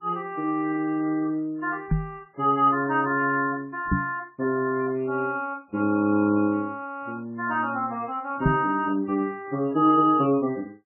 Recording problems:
lossy compression; MP3, log-spectral distance 2 dB, nothing above 2.5 kHz
knock on the microphone; at 2 s, at 4 s and at 8.5 s; peak +5 dB vs average level

